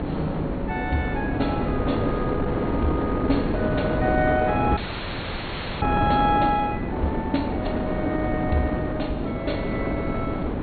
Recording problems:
low-pass filter; nothing above 4.4 kHz
mains hum; 50 Hz, harmonics up to 600 Hz, SNR 10 dB
wind on the microphone; below 500 Hz, SNR 0 dB
audio freezing; at 5 s for 1 s

